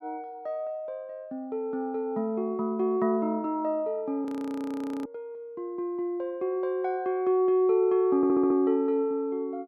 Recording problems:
audio freezing; at 4.5 s for 1 s
audio stuttering; at 8 s

